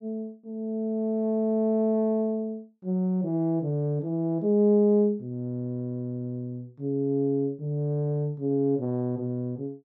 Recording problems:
none

